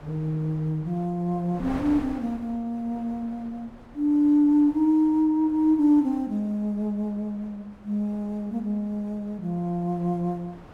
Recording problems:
wind on the microphone; below 840 Hz, SNR 20 dB

